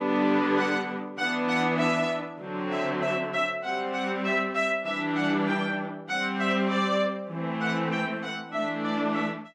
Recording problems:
none

